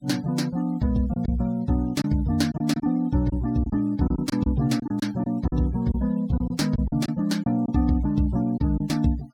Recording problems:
noise reduction artefacts; signal-to-artefact ratio 25 dB
lost packets; 7% of the sound replaced, filled with silence

